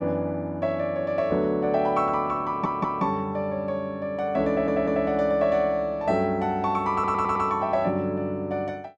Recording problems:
stutter; at 2.5 s, at 4.5 s and at 7 s

